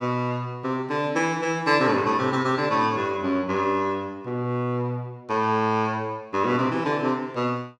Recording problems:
none

